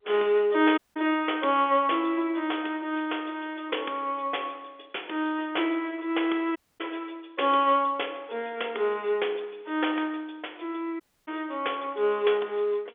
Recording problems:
telephone audio; 300 Hz to 3.5 kHz, G.711
audio cutting out; at 1 s, at 6.5 s and at 11 s

